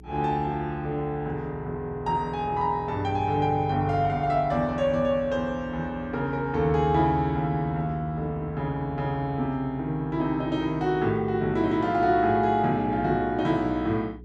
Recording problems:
hum; 60 Hz, harmonics up to 420 Hz, SNR 20 dB

